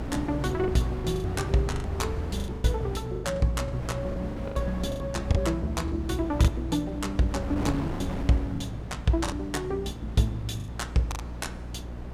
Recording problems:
electrical hum; 60 Hz, harmonics up to 360 Hz, SNR 9 dB
wind noise; below 520 Hz, SNR 10 dB
lost packets; 10% of the sound replaced, filled with the last packet

